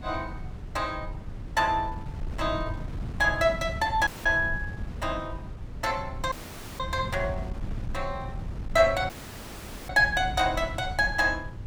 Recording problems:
wind on the microphone; below 130 Hz, SNR 10 dB
dropout; at 4 s, at 6.5 s and at 9 s for 1 s

